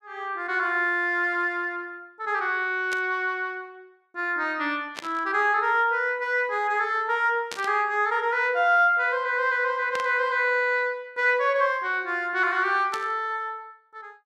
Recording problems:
static burst; 5 times, first at 3 s; peak -5 dB vs average level

